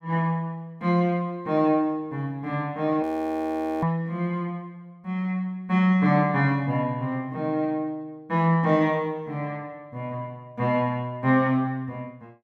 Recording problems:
frozen audio; at 3 s for 1 s

